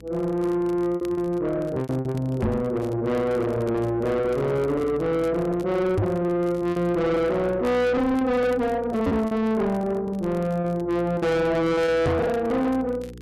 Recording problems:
distorted audio; soft clipping, signal-to-distortion ratio 6 dB
electrical hum; 60 Hz, harmonics up to 480 Hz, SNR 20 dB
crackling; vinyl, SNR 28 dB
lost packets; 8% of the sound replaced, filled with repeated pitch periods
microphone bump; 4 times, first at 2.5 s; peak +6 dB vs average level

